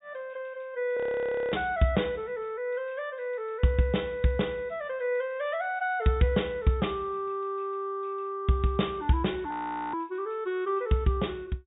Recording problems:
low-pass filter; nothing above 4 kHz
frozen audio; at 1 s for 0.5 s and at 9.5 s

